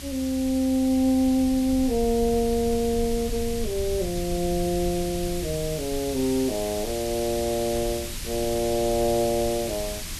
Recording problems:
background hiss; SNR 10 dB
rumble; below 76 Hz, SNR 13 dB

